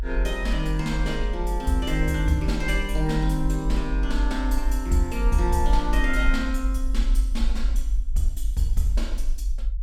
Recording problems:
rumble; below 48 Hz, strongest tone 44 Hz, SNR 0 dB

